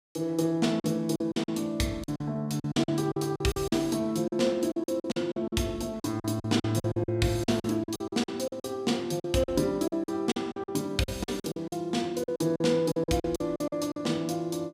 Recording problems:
lost packets; 16% of the sound replaced, filled with silence

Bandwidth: 15.5 kHz